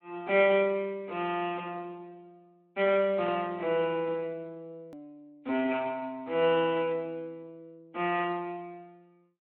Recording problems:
telephone audio; 220 Hz to 3.3 kHz, Speex
click at an edit; at 5 s

